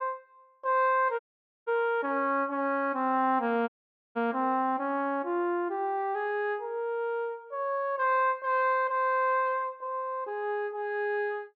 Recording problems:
audio cutting out; at 1 s and at 3.5 s

